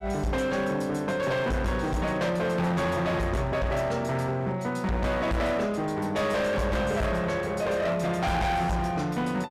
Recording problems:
distortion; hard clipping, uneven, signal-to-distortion ratio 7 dB

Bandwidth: 15 kHz